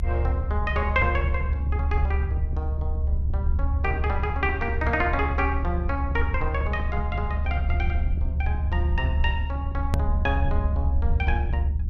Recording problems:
rumble; below 74 Hz, strongest tone 72 Hz, SNR -3 dB
click at an edit; at 10 s

